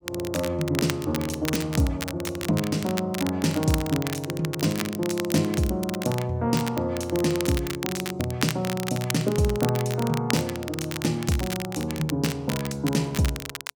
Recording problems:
crackle; vinyl, SNR 8 dB

